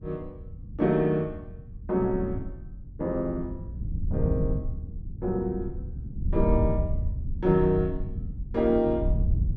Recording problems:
low-frequency rumble; below 110 Hz, SNR 12 dB
wind on the microphone; below 96 Hz, SNR 5 dB

